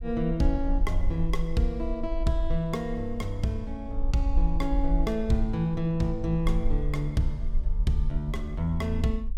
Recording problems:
low-frequency rumble; below 44 Hz, SNR 3 dB

